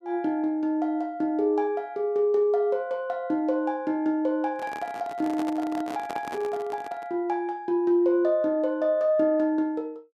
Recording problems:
microphone handling noise; from 4.5 to 7 s; peak -6 dB vs average level

